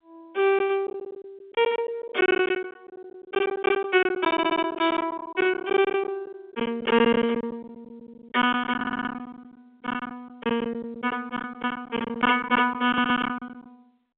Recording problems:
phone line; 260 Hz to 3.7 kHz, G.711
lost packets; 15% of the sound replaced, filled with silence
audio stuttering; at 4.5 s, at 9 s and at 13 s

